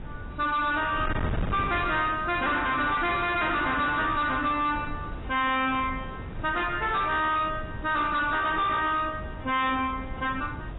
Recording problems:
lossy codec; AAC, log-spectral distance 3 dB, nothing above 3.9 kHz
distortion; soft clipping, signal-to-distortion ratio 7 dB
wind on the microphone; below 360 Hz, SNR 11 dB

